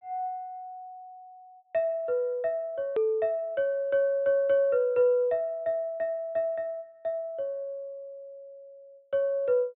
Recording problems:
treble cut off; nothing above 4 kHz
click at an edit; at 3 s

